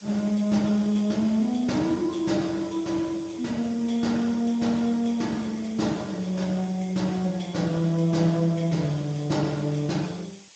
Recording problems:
codec artefacts; Speex, log-spectral distance 6 dB, nothing above 7.3 kHz
background hiss; slope +2 dB per octave, SNR 24 dB

